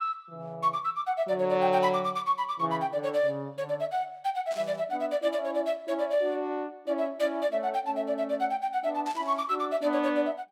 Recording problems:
burst of static; at 4.5 s and at 9 s; peak -12 dB vs average level

